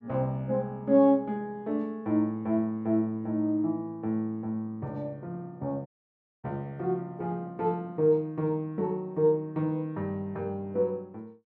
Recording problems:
audio cutting out; at 6 s for 0.5 s

